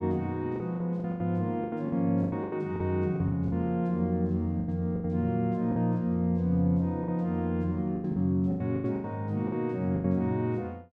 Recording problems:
lost packets; 13% of the sound replaced, filled with the last packet

